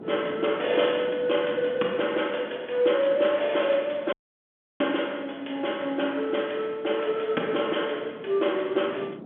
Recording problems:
telephone audio; 220 Hz to 3.4 kHz, G.711
wind noise; below 430 Hz, SNR 19 dB
audio cutting out; at 4 s for 0.5 s

